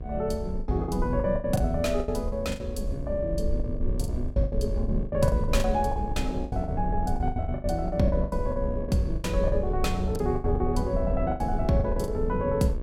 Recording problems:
hum; 60 Hz, harmonics up to 2.2 kHz, SNR 14 dB
wind noise; below 68 Hz, SNR 5 dB
lost packets; 17% of the sound replaced, filled with the last packet

